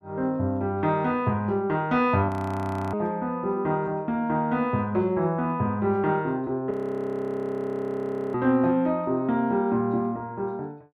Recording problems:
frozen audio; at 2.5 s for 0.5 s and at 6.5 s for 1.5 s

